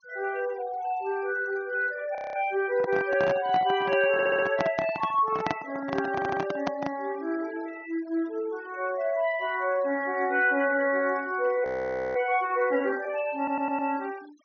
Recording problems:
treble missing; nothing above 6.5 kHz
denoising artefacts; signal-to-artefact ratio 22 dB
frozen audio; at 2 s and at 12 s for 0.5 s
microphone handling noise; from 2.5 to 7 s; peak +2 dB vs average level
stutter; at 4 s, at 6 s and at 13 s

